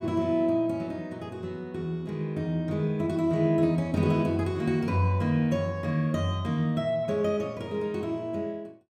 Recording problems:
none

